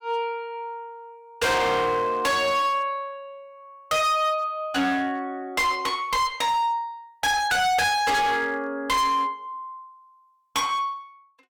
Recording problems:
distorted audio; hard clipping, uneven, signal-to-distortion ratio 6 dB

